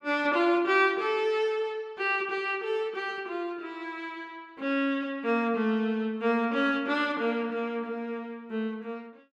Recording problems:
none

